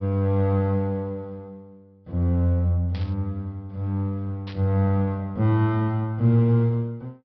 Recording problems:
treble cut off; nothing above 5.5 kHz
static burst; at 3 s and at 4.5 s; peak -14 dB vs average level

